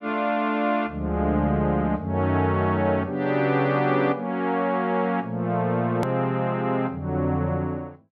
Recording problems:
edit click; at 6 s

